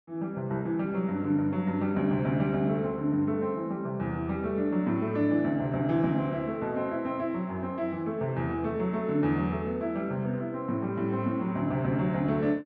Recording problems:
none

